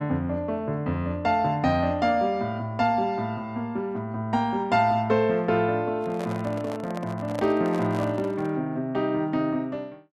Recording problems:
handling noise; from 6 to 8.5 s; peak -3 dB vs average level

